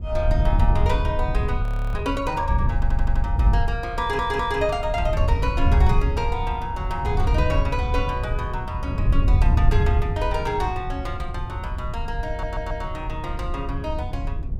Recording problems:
rumble; below 86 Hz, SNR 8 dB
wind noise; below 88 Hz, SNR -2 dB
audio freezing; at 1.5 s
audio stuttering; at 2.5 s, at 4 s and at 12 s

